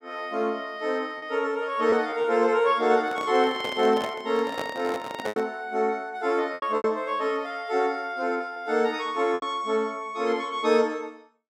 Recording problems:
packet loss; 4% of the sound replaced, filled with repeated pitch periods
microphone handling noise; from 3 to 5.5 s; peak -3 dB vs average level

